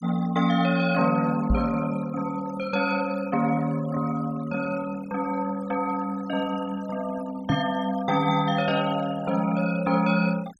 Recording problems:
denoising artefacts; signal-to-artefact ratio 19 dB
microphone bump; at 1.5 s and at 7.5 s; peak +4 dB vs average level

